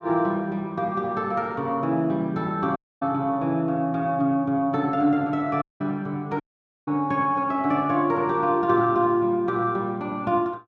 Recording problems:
dropout; at 3 s, at 5.5 s and at 6.5 s

